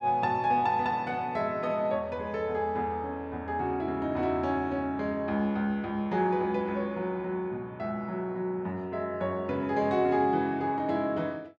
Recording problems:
none

